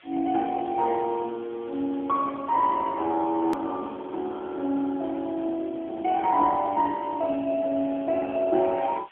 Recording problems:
telephone audio; 240 Hz to 3.8 kHz, AMR-NB
background hiss; SNR 27 dB
edit click; at 3.5 s

